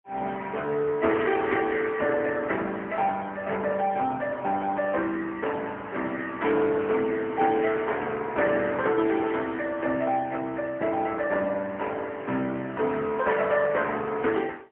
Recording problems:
telephone audio; 240 Hz to 3.1 kHz, AMR-NB, then MP3

